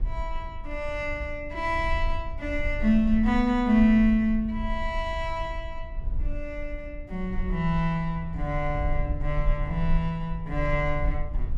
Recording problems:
rumble; below 52 Hz, SNR 8 dB

